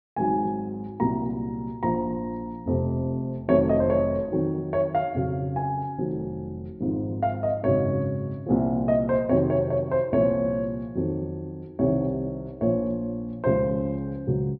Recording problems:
treble cut off; nothing above 5.5 kHz

